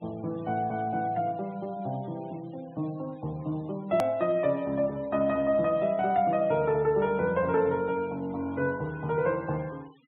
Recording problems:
treble cut off; nothing above 3.9 kHz
denoising artefacts; signal-to-artefact ratio 27 dB
click at an edit; at 4 s

